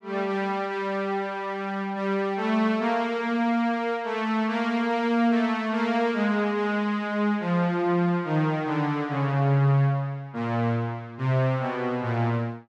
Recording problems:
none

